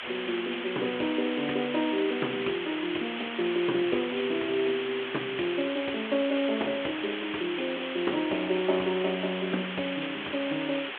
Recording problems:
telephone audio; 260 Hz to 3.4 kHz, G.726
hiss; SNR 5 dB

